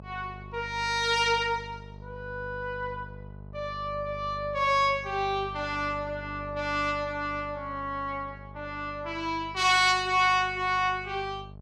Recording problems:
hum; 50 Hz, harmonics up to 850 Hz, SNR 17 dB

